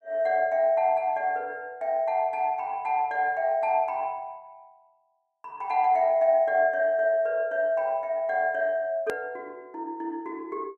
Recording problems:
edit click; at 9 s

